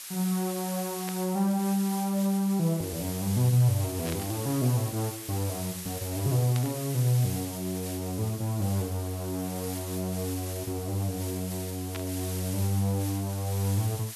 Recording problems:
hiss; slope +4 dB per octave, SNR 9 dB
burst of static; 4 times, first at 1 s; peak -6 dB vs average level

